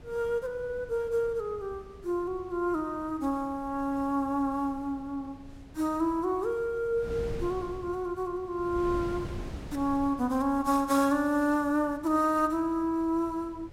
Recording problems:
wind noise; below 270 Hz, SNR 17 dB

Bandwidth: 16 kHz